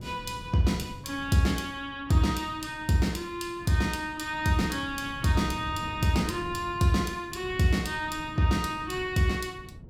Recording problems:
wind on the microphone; below 210 Hz, SNR 16 dB

